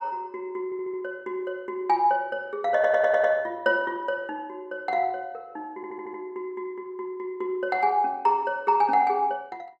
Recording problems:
stutter; at 0.5 s, at 2.5 s and at 6 s

